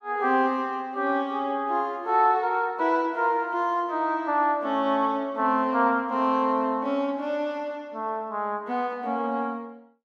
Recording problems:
none

